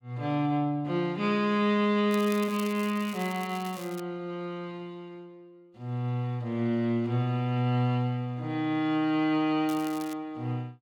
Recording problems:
crackling; from 2 to 4 s and at 9.5 s; loose cable, SNR 17 dB

